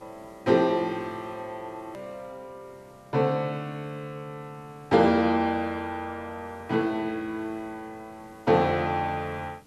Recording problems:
hiss; SNR 29 dB
edit click; at 2 s

